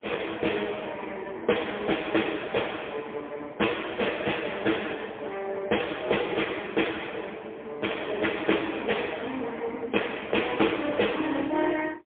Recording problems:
telephone audio; 260 Hz to 3.5 kHz, AMR-NB, then MP3

